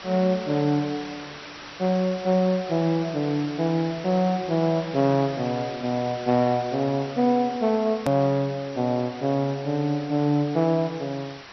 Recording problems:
lossy codec; MP2, then MP3, log-spectral distance 7 dB, nothing above 13.1 kHz
hiss; slope -1 dB per octave, SNR 15 dB
click at an edit; at 8 s

